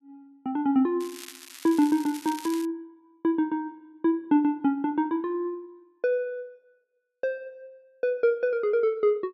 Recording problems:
crackling; from 1 to 2.5 s; loose cable, SNR 16 dB

